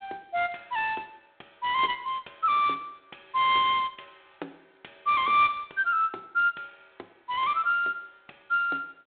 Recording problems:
phone line; 280 Hz to 3.5 kHz, G.726

